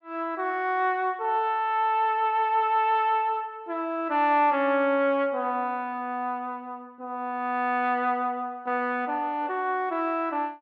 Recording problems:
none

